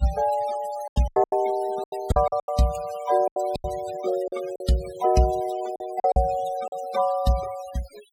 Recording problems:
noise reduction artefacts; signal-to-artefact ratio 17 dB
lost packets; 11% of the sound replaced, filled with silence

